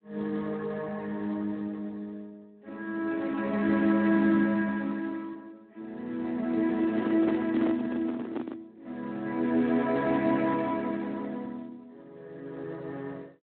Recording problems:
telephone audio; 220 Hz to 2.6 kHz, Speex
microphone handling noise; from 7 to 8.5 s; peak +2 dB vs average level

